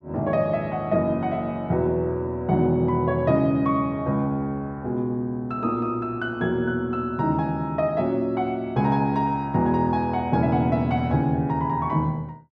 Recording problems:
none

